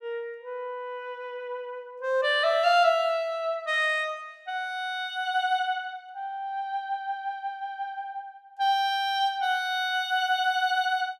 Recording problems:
none

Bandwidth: 15 kHz